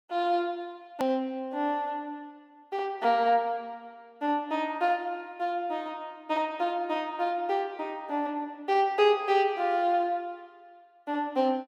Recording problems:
edit click; at 1 s

